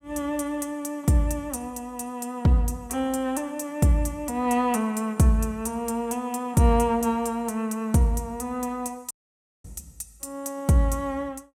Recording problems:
dropout; at 9 s for 0.5 s

